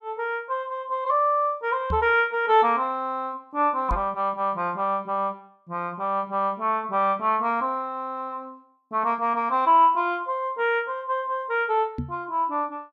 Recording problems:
microphone bump; at 2 s, at 4 s and at 12 s; peak -1 dB vs average level

